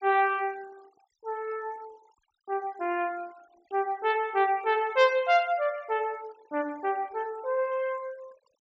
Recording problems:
treble cut off; nothing above 8 kHz
noise reduction artefacts; signal-to-artefact ratio 24 dB

